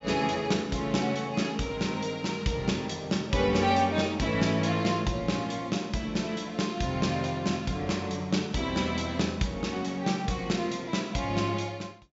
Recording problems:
low-pass filter; nothing above 7.6 kHz

